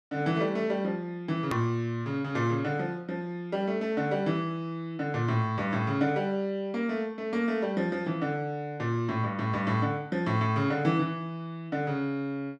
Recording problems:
edit click; at 1.5 s

